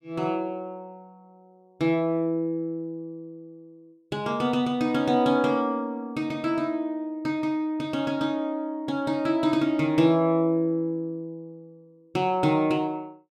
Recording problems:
none

